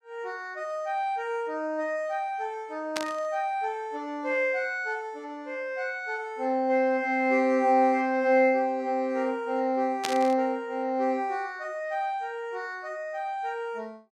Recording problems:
burst of static; at 3 s and at 10 s; peak +2 dB vs average level

